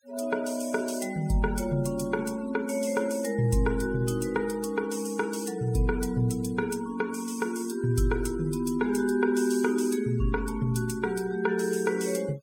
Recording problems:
noise reduction artefacts; signal-to-artefact ratio 19 dB

